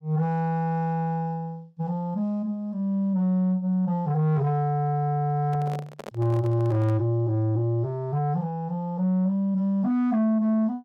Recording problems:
distortion; soft clipping, signal-to-distortion ratio 12 dB
microphone handling noise; from 5.5 to 7 s; peak -8 dB vs average level

